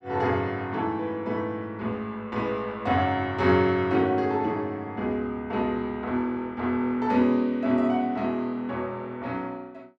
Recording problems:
none

